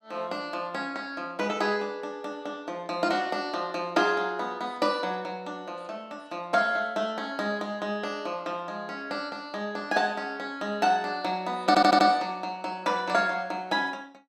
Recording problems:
stutter; at 12 s

